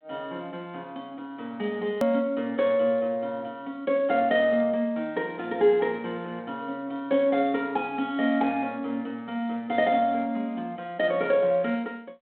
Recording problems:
telephone audio; 190 Hz to 3.7 kHz, G.726
edit click; at 2 s

